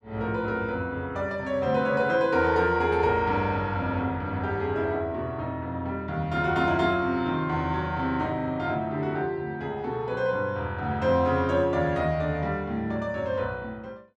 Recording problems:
none

